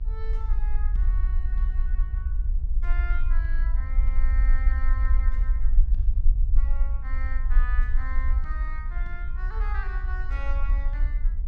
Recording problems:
electrical hum; 60 Hz, harmonics up to 1.1 kHz, SNR 11 dB
low-frequency rumble; below 46 Hz, strongest tone 22 Hz, SNR -13 dB

